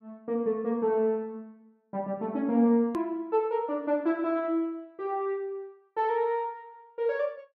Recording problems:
hard cut with a click; at 3 s

